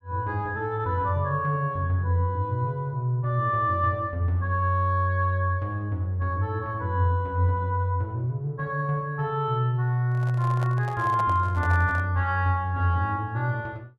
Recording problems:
microphone handling noise; from 10 to 12 s; peak -7 dB vs average level

